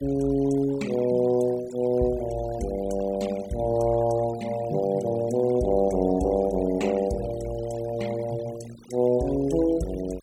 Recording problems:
denoising artefacts; signal-to-artefact ratio 20 dB

